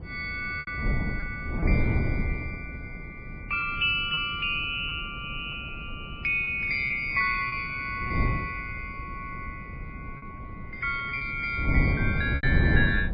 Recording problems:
lossy compression; MP3, log-spectral distance 2 dB, nothing above 4.5 kHz
wind on the microphone; below 180 Hz, SNR 4 dB
lost packets; 4% of the sound replaced, filled with repeated pitch periods

